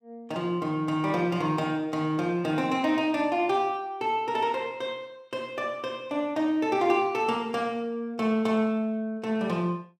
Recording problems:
none

